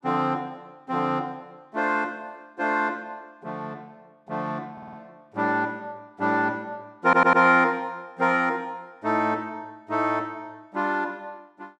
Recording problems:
audio stuttering; at 4.5 s and at 7 s

